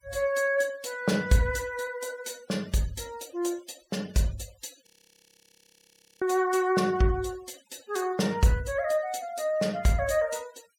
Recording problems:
noise reduction artefacts; signal-to-artefact ratio 22 dB
frozen audio; at 5 s for 1.5 s

